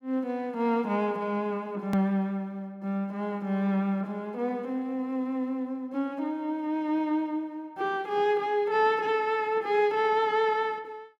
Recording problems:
hard cut with a click; at 2 s

